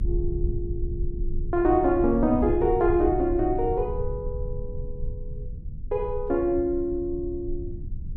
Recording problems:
low-frequency rumble; below 74 Hz, strongest tone 20 Hz, SNR 9 dB

